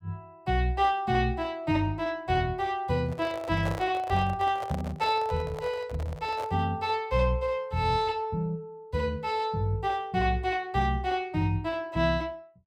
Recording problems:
microphone handling noise; from 3 to 6.5 s; peak -4 dB vs average level

